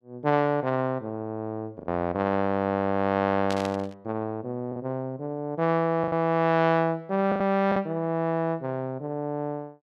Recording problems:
packet loss; 3% of the sound replaced, filled with the last packet
burst of static; at 3.5 s; peak -4 dB vs average level

